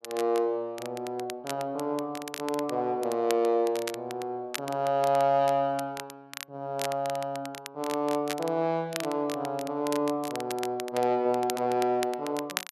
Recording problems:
crackle; vinyl, SNR 13 dB

